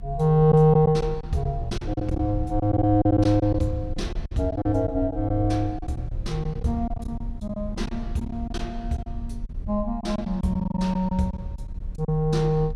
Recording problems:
rumble; below 68 Hz, strongest tone 34 Hz, SNR 11 dB
lost packets; 10% of the sound replaced, filled with silence

